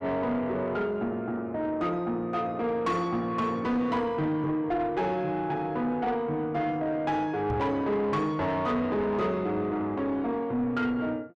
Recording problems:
distortion; soft clipping, signal-to-distortion ratio 11 dB
knock on the microphone; at 7.5 s; peak -1 dB vs average level

